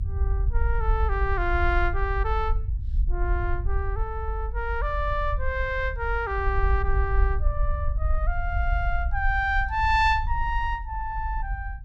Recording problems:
rumble; below 60 Hz, SNR 1 dB

